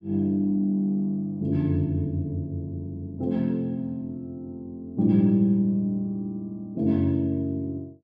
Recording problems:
none

